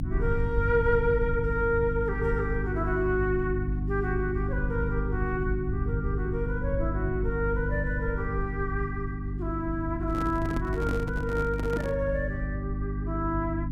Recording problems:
hum; 50 Hz, harmonics up to 300 Hz, SNR 2 dB
rumble; below 96 Hz, SNR 7 dB
handling noise; from 10 to 12 s; peak -2 dB vs average level

